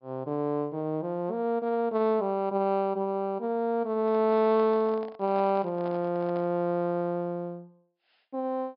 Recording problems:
treble cut off; nothing above 5.5 kHz
microphone handling noise; from 4 to 6.5 s; peak -12 dB vs average level

